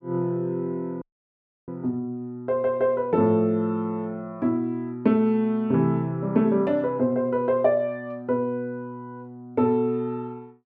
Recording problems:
dropout; at 1 s for 0.5 s

